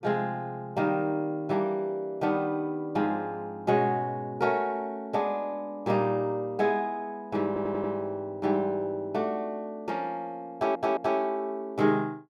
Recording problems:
stutter; at 7.5 s and at 11 s

